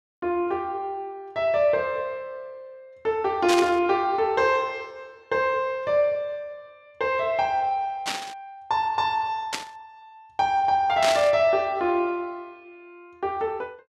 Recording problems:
burst of static; 4 times, first at 3.5 s; peak +2 dB vs average level

